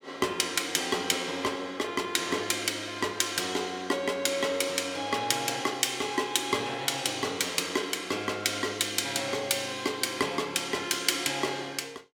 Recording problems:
none

